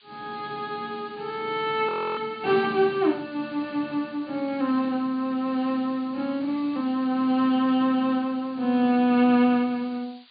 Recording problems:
treble missing; nothing above 4.7 kHz
hiss; SNR 27 dB
frozen audio; at 2 s

